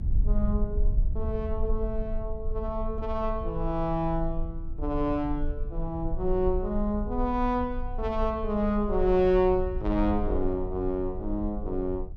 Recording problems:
low-frequency rumble; below 54 Hz, strongest tone 26 Hz, SNR 6 dB

